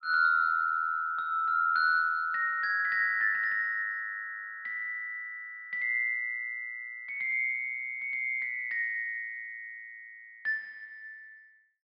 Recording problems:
none

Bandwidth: 5 kHz